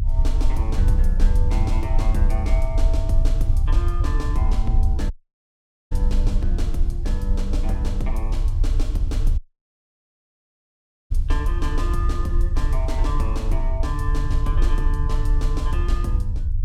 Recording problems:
rumble; below 60 Hz, strongest tone 28 Hz, SNR -7 dB
audio cutting out; at 5 s for 1 s and at 9.5 s for 1.5 s

